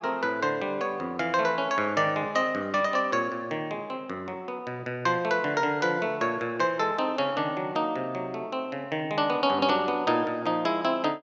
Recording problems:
none

